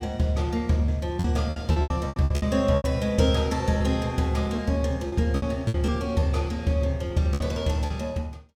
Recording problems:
lost packets; 10% of the sound replaced, filled with repeated pitch periods

